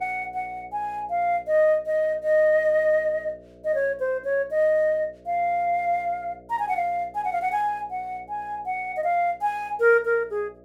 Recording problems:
electrical hum; 60 Hz, harmonics up to 660 Hz, SNR 25 dB

